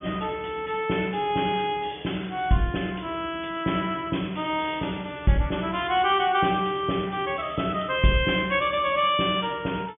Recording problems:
low-pass filter; nothing above 3.5 kHz

